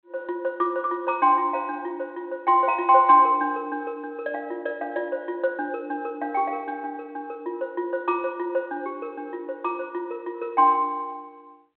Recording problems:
telephone audio; 240 Hz to 3.2 kHz, G.726

